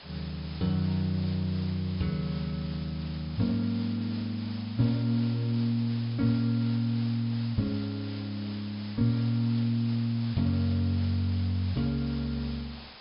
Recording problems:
low-pass filter; nothing above 5.5 kHz
background hiss; slope -1 dB per octave, SNR 16 dB

